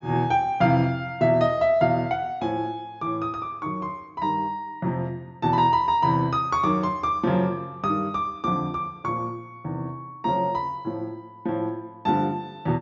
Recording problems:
treble missing; nothing above 7.3 kHz

